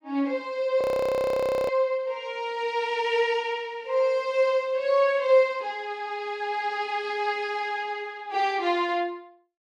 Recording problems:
audio freezing; at 1 s for 1 s

